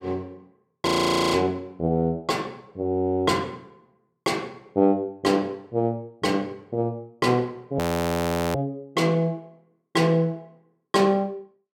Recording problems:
audio freezing; at 1 s and at 8 s for 0.5 s

